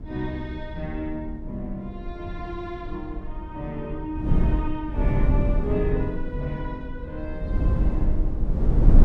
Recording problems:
wind noise; below 98 Hz, SNR -5 dB

